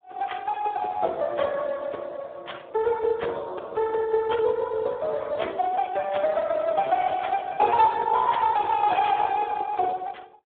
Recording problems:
telephone audio; 320 Hz to 3.7 kHz, Speex

